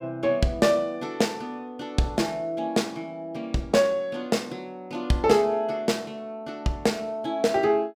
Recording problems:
none

